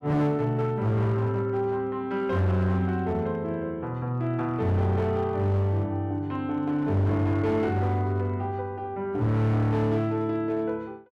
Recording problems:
distortion; hard clipping, signal-to-distortion ratio 12 dB

